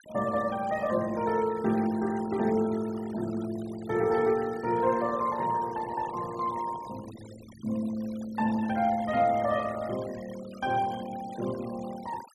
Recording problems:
noise reduction artefacts; signal-to-artefact ratio 18 dB

